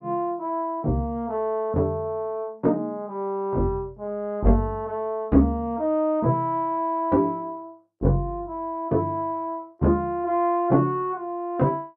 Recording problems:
none

